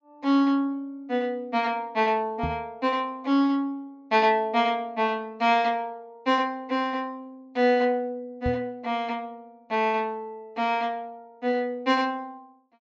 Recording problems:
treble missing; nothing above 8 kHz
knock on the microphone; at 2.5 s and at 8.5 s; peak -1 dB vs average level

